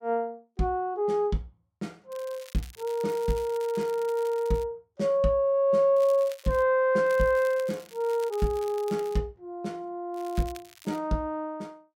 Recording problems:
crackling; 4 times, first at 2 s; loose cable, SNR 22 dB

